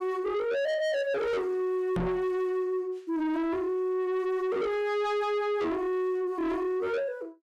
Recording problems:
distorted audio; soft clipping, signal-to-distortion ratio 7 dB
microphone bump; at 2 s; peak +3 dB vs average level

